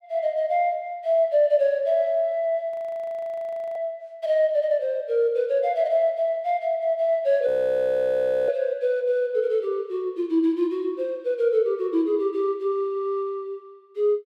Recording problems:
audio freezing; at 2.5 s for 1 s and at 7.5 s for 1 s

